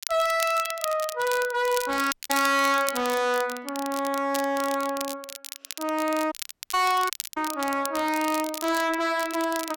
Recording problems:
distortion; hard clipping, uneven, signal-to-distortion ratio 6 dB
crackling; vinyl, SNR 10 dB
dropout; at 2 s, at 6.5 s and at 7 s

